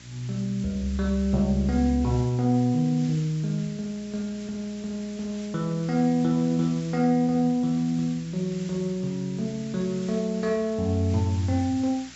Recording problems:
low-pass filter; nothing above 7.6 kHz
hum; 60 Hz, harmonics up to 1.3 kHz, SNR 27 dB
hiss; SNR 20 dB

